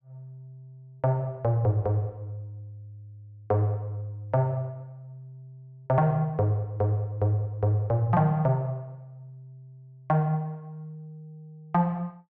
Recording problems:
none

